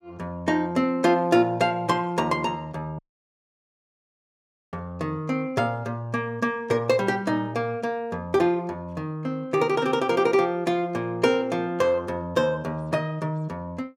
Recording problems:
dropout; at 3 s for 1.5 s

